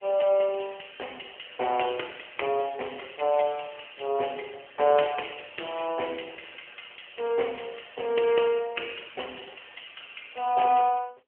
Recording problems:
phone line; 300 Hz to 3.1 kHz, AMR-NB

